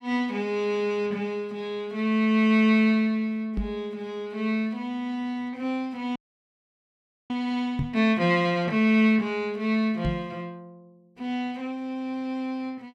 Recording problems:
microphone bump; at 3.5 s, at 8 s and at 10 s; peak +1 dB vs average level
frozen audio; at 6 s for 1 s

